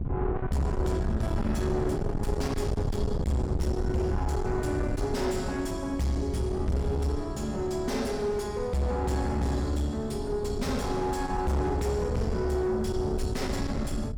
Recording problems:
distortion; soft clipping, signal-to-distortion ratio 8 dB
wind noise; below 170 Hz, SNR 4 dB

